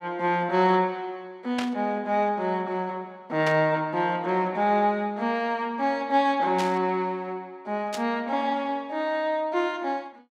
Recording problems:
burst of static; 4 times, first at 1.5 s; peak -2 dB vs average level

